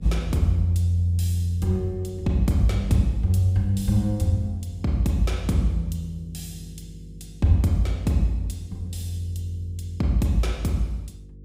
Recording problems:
hum; 50 Hz, harmonics up to 500 Hz, SNR 19 dB

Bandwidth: 15.5 kHz